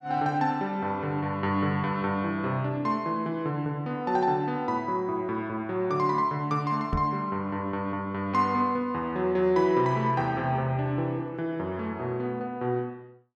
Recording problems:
knock on the microphone; at 7 s; peak +2 dB vs average level

